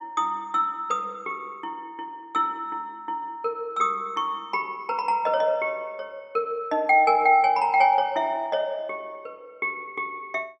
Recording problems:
none

